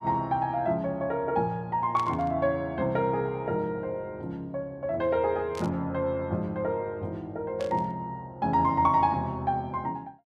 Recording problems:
burst of static; at 2 s, at 5.5 s and at 7.5 s; peak -8 dB vs average level

